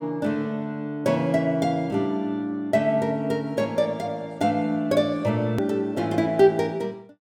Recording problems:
edit click; at 5.5 s

